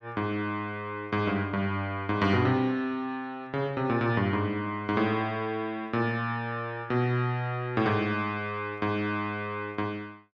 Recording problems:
none

